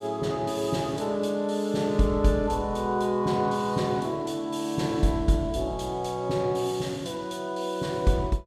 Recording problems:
none

